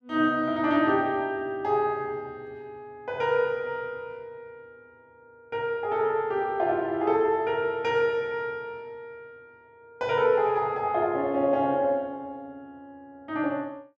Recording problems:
none

